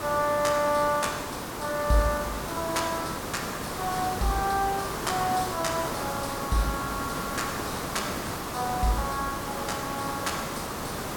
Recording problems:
background hiss; SNR 3 dB

